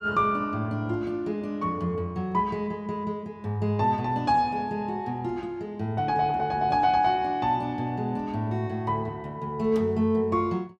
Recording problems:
none

